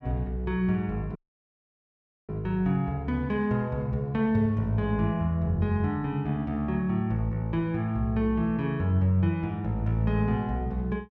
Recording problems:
dropout; at 1 s for 1 s

